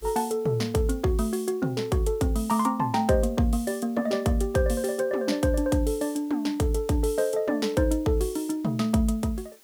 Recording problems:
background hiss; slope -1 dB per octave, SNR 28 dB

